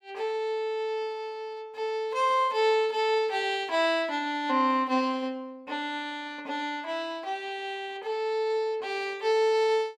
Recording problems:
none

